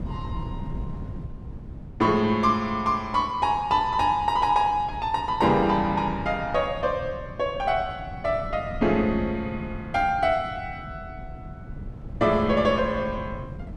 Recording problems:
wind on the microphone; below 180 Hz, SNR 14 dB

